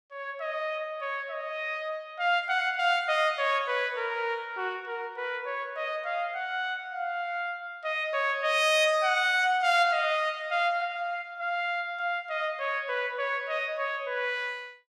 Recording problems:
none

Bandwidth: 14.5 kHz